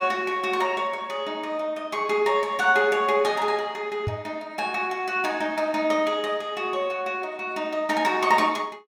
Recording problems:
microphone bump; at 4 s; peak -1 dB vs average level

